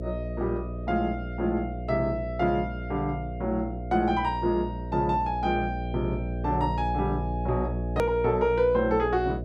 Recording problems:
electrical hum; 60 Hz, harmonics up to 660 Hz, SNR 6 dB
edit click; at 8 s

